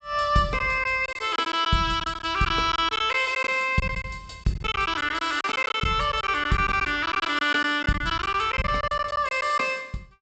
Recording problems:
treble missing; nothing above 8 kHz
packet loss; 11% of the sound replaced, filled with silence

